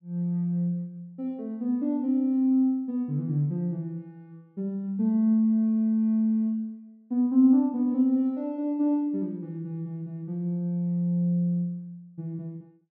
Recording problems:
none

